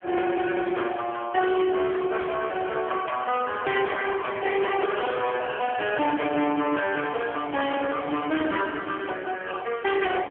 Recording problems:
telephone audio; 240 Hz to 3.4 kHz, AMR-NB
distortion; hard clipping, signal-to-distortion ratio 8 dB

